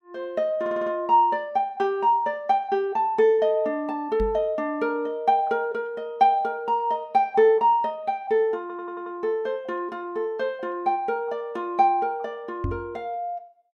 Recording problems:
audio stuttering; at 0.5 s and at 8.5 s
microphone thump; at 4 s and at 13 s; peak -1 dB vs average level

